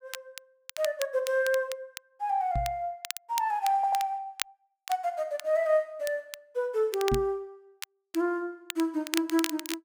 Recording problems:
crackling; vinyl, SNR 10 dB
microphone bump; at 2.5 s and at 7 s; peak +2 dB vs average level
audio stuttering; at 4 s

